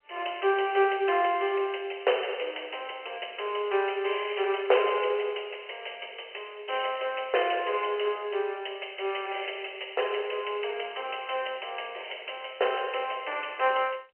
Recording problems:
phone line; 340 Hz to 3.1 kHz, G.711

